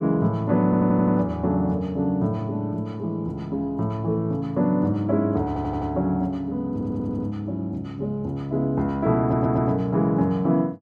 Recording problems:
audio stuttering; 4 times, first at 0.5 s

